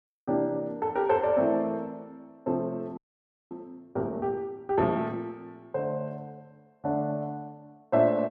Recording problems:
audio freezing; at 3 s for 0.5 s

